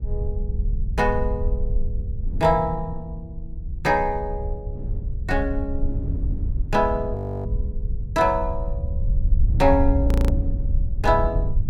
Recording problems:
rumble; below 72 Hz, SNR 3 dB
wind noise; below 200 Hz, SNR 13 dB
frozen audio; at 7 s and at 10 s

